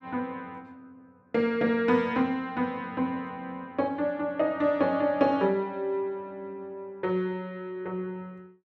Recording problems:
none

